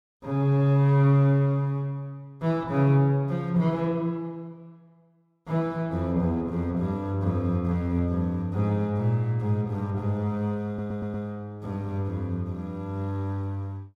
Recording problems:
audio stuttering; at 11 s

